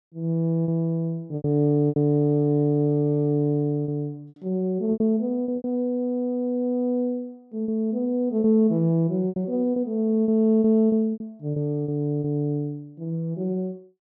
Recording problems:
lost packets; 7% of the sound replaced, filled with repeated pitch periods

